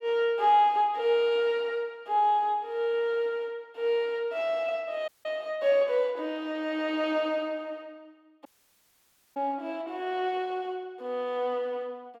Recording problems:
audio cutting out; at 5 s and at 8.5 s for 1 s

